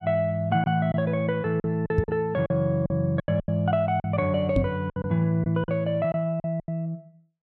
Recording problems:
packet loss; 10% of the sound replaced, filled with silence
microphone bump; at 2 s and at 4.5 s; peak +5 dB vs average level

